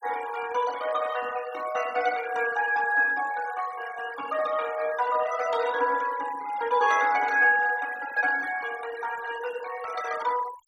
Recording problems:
noise reduction artefacts; signal-to-artefact ratio 16 dB

